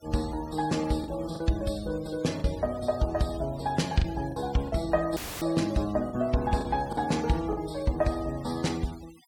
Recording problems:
denoising artefacts; signal-to-artefact ratio 19 dB
packet loss; 5% of the sound replaced, filled with the last packet
audio cutting out; at 5 s; filled with static

